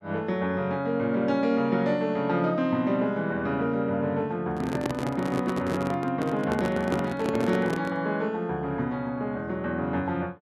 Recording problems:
handling noise; from 4.5 to 8 s; peak +2 dB vs average level

